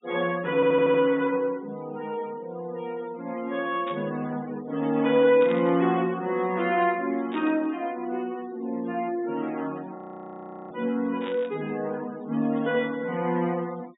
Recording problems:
treble cut off; nothing above 4 kHz
denoising artefacts; signal-to-artefact ratio 23 dB
audio stuttering; at 0.5 s
static burst; 4 times, first at 4 s; peak -9 dB vs average level
audio freezing; at 10 s for 0.5 s

